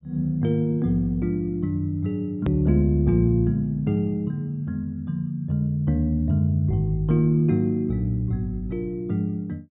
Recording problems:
low-pass filter; nothing above 4 kHz
click at an edit; at 2.5 s

